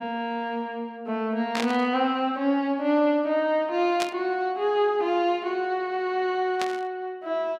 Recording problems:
static burst; at 1.5 s, at 4 s and at 6.5 s; peak 0 dB vs average level

